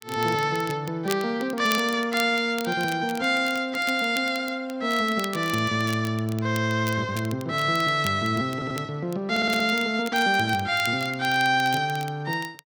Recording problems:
crackling; vinyl, SNR 16 dB
stutter; at 8.5 s and at 9.5 s

